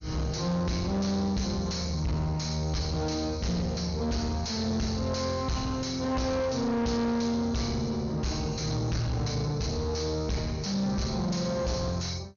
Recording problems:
codec artefacts; MP2, log-spectral distance 3 dB, nothing above 6.7 kHz
distortion; soft clipping, signal-to-distortion ratio 7 dB

